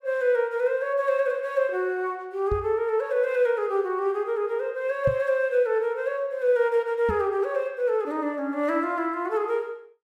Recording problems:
microphone thump; at 2.5 s, at 5 s and at 7 s; peak -1 dB vs average level

